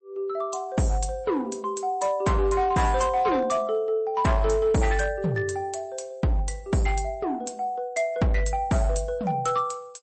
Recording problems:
codec artefacts; MP3, log-spectral distance 2 dB, nothing above 8.2 kHz
distortion; hard clipping, signal-to-distortion ratio 11 dB

